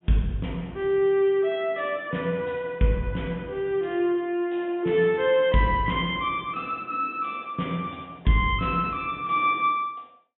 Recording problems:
low-pass filter; nothing above 3.5 kHz

